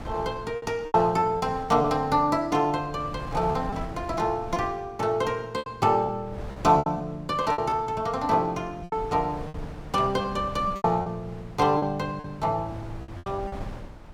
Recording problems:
wind on the microphone; below 370 Hz, SNR 16 dB
packet loss; 9% of the sound replaced, filled with repeated pitch periods

